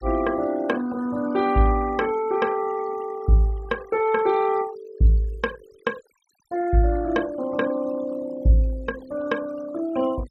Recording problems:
noise reduction artefacts; signal-to-artefact ratio 19 dB

